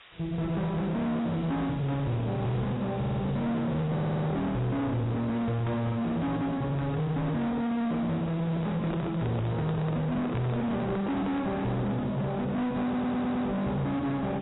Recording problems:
lossy compression; AAC, log-spectral distance 11 dB, nothing above 3.8 kHz
distorted audio; soft clipping, signal-to-distortion ratio 7 dB
hiss; SNR 22 dB
stutter; at 3 s, at 4 s and at 13 s
handling noise; from 8.5 to 11 s; peak 0 dB vs average level

